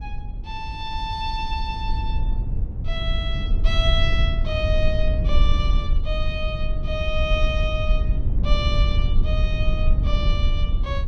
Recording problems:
low-frequency rumble; below 66 Hz, SNR -4 dB

